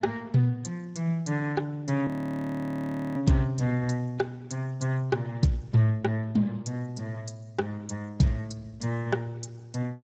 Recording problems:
lossy compression; Speex, log-spectral distance 3 dB, nothing above 18.9 kHz
audio freezing; at 2 s for 1 s

